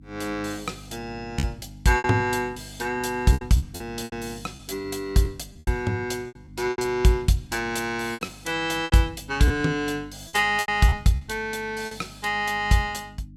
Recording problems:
hum; 50 Hz, harmonics up to 300 Hz, SNR 20 dB
packet loss; 9% of the sound replaced, filled with repeated pitch periods

